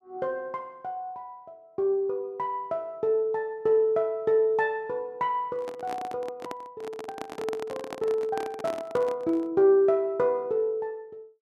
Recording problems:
handling noise; from 5.5 to 9.5 s; peak -4 dB vs average level

